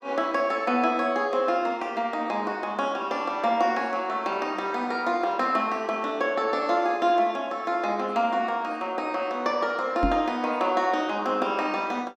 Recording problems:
microphone bump; at 10 s; peak +3 dB vs average level

